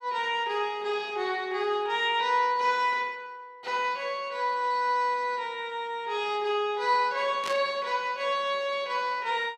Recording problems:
burst of static; at 7.5 s; peak -3 dB vs average level

